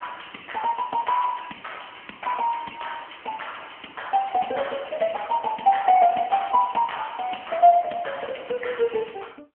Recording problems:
phone line; 240 Hz to 3.3 kHz, AMR-NB

